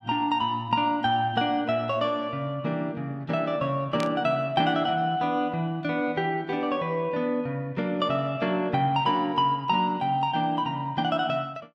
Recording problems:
burst of static; at 4 s; peak -5 dB vs average level

